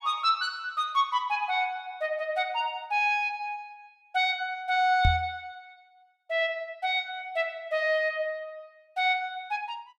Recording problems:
microphone bump; at 5 s; peak +5 dB vs average level

